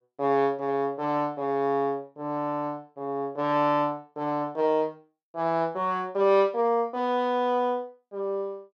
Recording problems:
none

